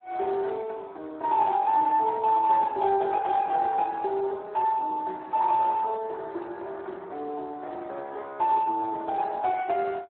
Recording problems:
telephone audio; 300 Hz to 2.6 kHz, Speex

